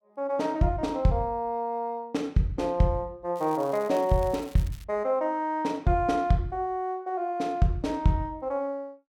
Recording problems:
crackle; from 3.5 to 5 s; loose cable, SNR 23 dB

